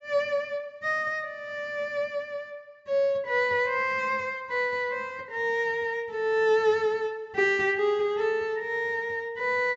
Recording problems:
treble cut off; nothing above 8 kHz

